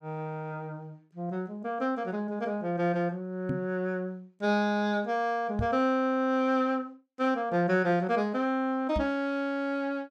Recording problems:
knock on the microphone; at 3.5 s, at 5.5 s and at 9 s; peak +2 dB vs average level

